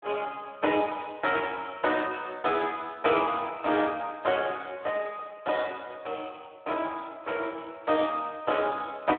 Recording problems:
phone line; 240 Hz to 3.4 kHz, Speex

